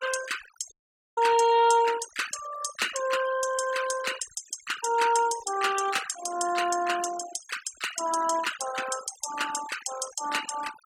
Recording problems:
denoising artefacts; signal-to-artefact ratio 12 dB
dropout; at 0.5 s

